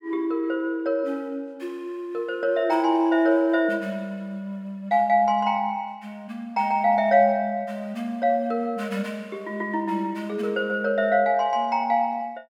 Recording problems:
none

